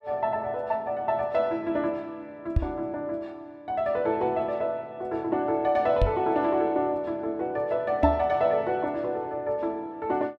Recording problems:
microphone bump; at 2.5 s, at 6 s and at 8 s; peak +7 dB vs average level

